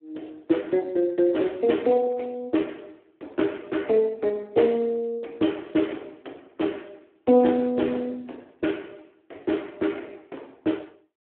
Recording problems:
telephone audio; 240 Hz to 3.3 kHz, Speex

